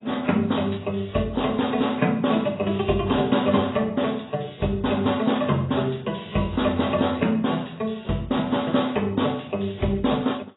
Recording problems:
codec artefacts; AAC, log-spectral distance 5 dB, nothing above 3.8 kHz

